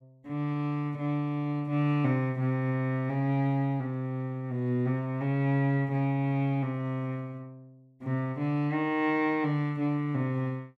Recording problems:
none

